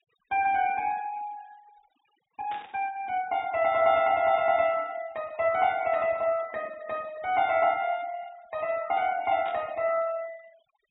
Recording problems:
treble missing; nothing above 4 kHz
noise reduction artefacts; signal-to-artefact ratio 24 dB
static burst; at 2.5 s and at 9.5 s; peak -12 dB vs average level

